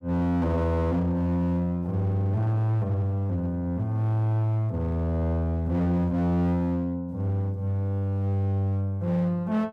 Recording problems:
distortion; hard clipping, uneven, signal-to-distortion ratio 11 dB

